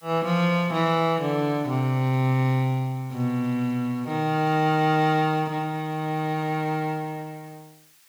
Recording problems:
hiss; slope +3 dB per octave, SNR 29 dB

